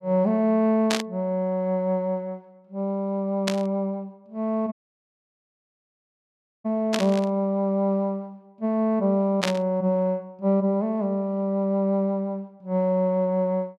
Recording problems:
static burst; 4 times, first at 1 s; peak +3 dB vs average level
audio cutting out; at 4.5 s for 2 s

